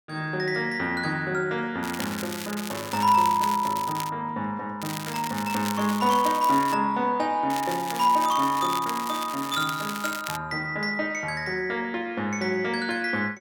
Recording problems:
crackle; from 2 to 4 s, from 5 to 6.5 s and from 7.5 to 10 s; loose cable, SNR 10 dB

